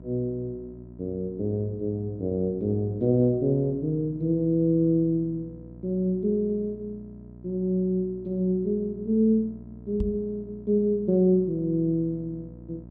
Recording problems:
hum; 60 Hz, harmonics up to 720 Hz, SNR 19 dB
knock on the microphone; at 10 s; peak +1 dB vs average level

